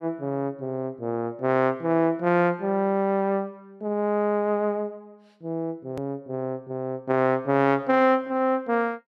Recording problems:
edit click; at 6 s

